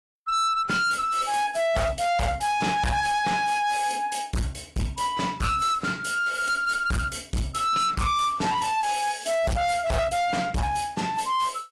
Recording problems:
lossy codec; AAC, log-spectral distance 3 dB
distorted audio; hard clipping, uneven, signal-to-distortion ratio 6 dB

